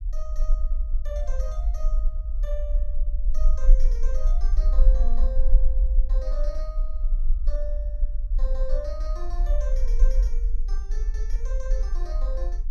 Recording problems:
low-frequency rumble; below 40 Hz, strongest tone 18 Hz, SNR -14 dB

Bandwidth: 16 kHz